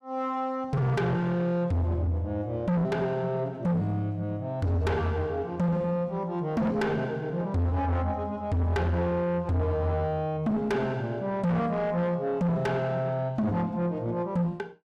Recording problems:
distorted audio; soft clipping, signal-to-distortion ratio 6 dB

